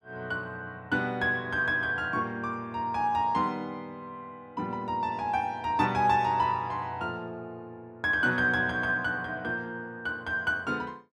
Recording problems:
none

